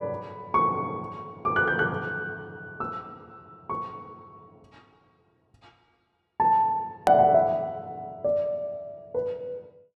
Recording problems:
edit click; at 7 s

